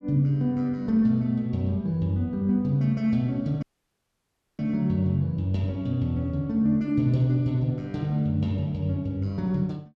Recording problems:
dropout; at 3.5 s for 1 s

